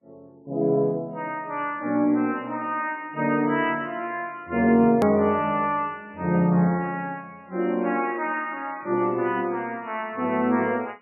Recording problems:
lossy compression; MP3, log-spectral distance 2 dB, nothing above 13.1 kHz
click at an edit; at 5 s

